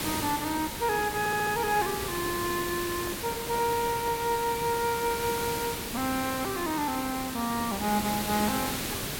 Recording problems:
background hiss; SNR 4 dB
stutter; at 1 s
microphone handling noise; from 3 to 4 s; peak -9 dB vs average level

